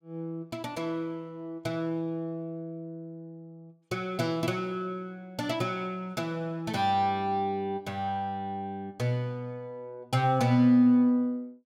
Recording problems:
none

